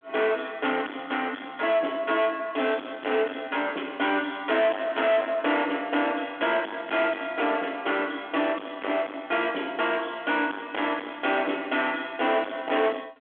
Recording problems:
phone line; 240 Hz to 3.4 kHz, G.726
distorted audio; soft clipping, signal-to-distortion ratio 7 dB

